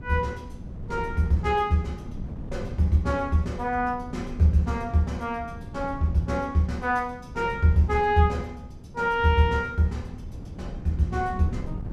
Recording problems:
wind on the microphone; below 170 Hz, SNR 14 dB

